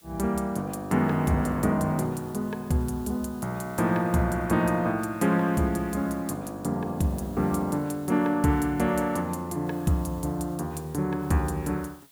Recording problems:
hiss; slope +1 dB per octave, SNR 25 dB

